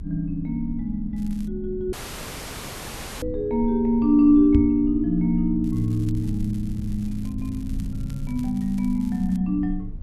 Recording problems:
rumble; below 80 Hz, strongest tone 24 Hz, SNR 13 dB
crackling; at 1 s and from 5.5 to 9.5 s; loose cable, SNR 28 dB
audio cutting out; at 2 s for 1.5 s
knock on the microphone; at 4.5 s; peak +5 dB vs average level

